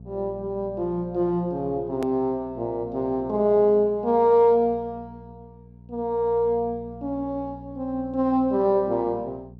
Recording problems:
electrical hum; 60 Hz, harmonics up to 480 Hz, SNR 20 dB
click at an edit; at 2 s

